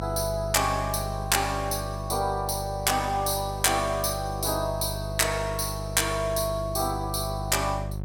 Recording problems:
hum; 50 Hz, harmonics up to 750 Hz, SNR 8 dB

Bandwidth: 17.5 kHz